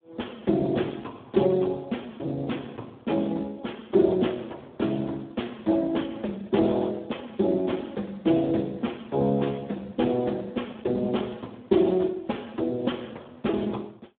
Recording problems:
phone line; 150 Hz to 3.6 kHz, Speex

